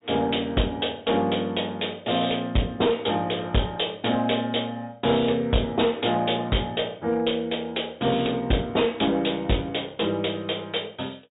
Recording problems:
treble cut off; nothing above 4 kHz
distortion; hard clipping, uneven, signal-to-distortion ratio 11 dB

